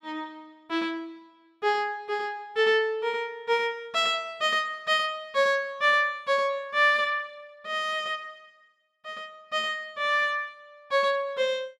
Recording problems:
none

